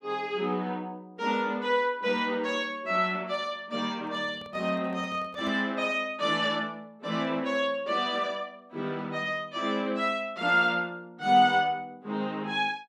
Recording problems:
handling noise; from 4 to 5.5 s; peak -13 dB vs average level

